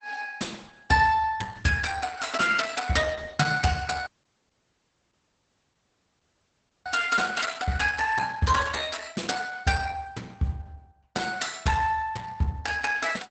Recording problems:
codec artefacts; Opus, log-spectral distance 5 dB, nothing above 8 kHz
audio cutting out; at 4 s for 3 s

